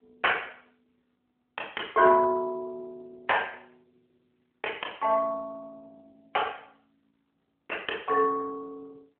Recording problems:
telephone audio; 320 Hz to 3.2 kHz, AMR-NB

